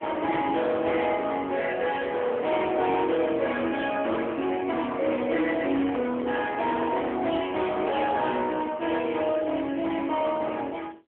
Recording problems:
phone line; 260 Hz to 3.4 kHz, AMR-NB
distortion; hard clipping, signal-to-distortion ratio 12 dB
handling noise; from 5.5 to 7 s; peak -6 dB vs average level

